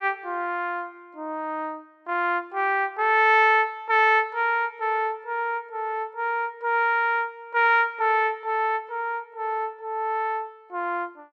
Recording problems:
none

